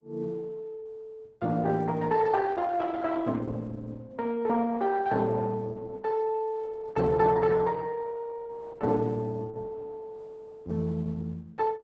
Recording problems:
lossy compression; Opus, log-spectral distance 3 dB, nothing above 7.6 kHz

